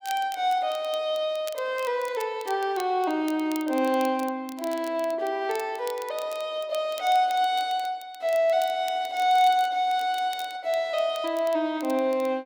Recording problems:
crackle; vinyl, SNR 20 dB

